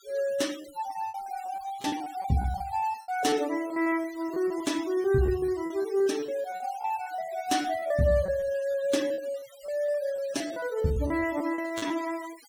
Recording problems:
noise reduction artefacts; signal-to-artefact ratio 17 dB
lost packets; 14% of the sound replaced, filled with repeated pitch periods

